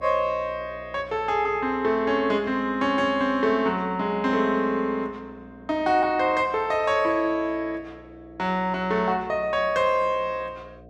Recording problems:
hum; 60 Hz, harmonics up to 720 Hz, SNR 24 dB

